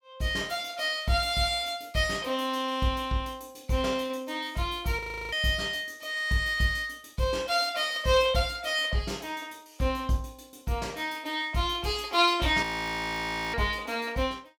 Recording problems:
audio freezing; at 5 s and at 13 s for 1 s

